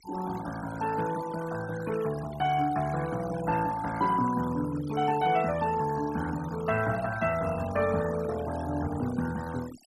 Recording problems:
noise reduction artefacts; signal-to-artefact ratio 14 dB

